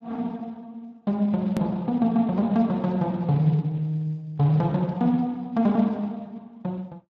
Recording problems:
codec artefacts; Speex, log-spectral distance 2 dB, nothing above 13.1 kHz
hard cut with a click; at 1.5 s

